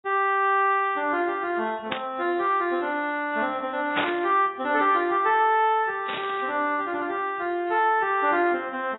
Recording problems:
lossy compression; AAC, log-spectral distance 3 dB, nothing above 3.2 kHz
burst of static; at 2 s, at 4 s and at 6 s; peak +1 dB vs average level

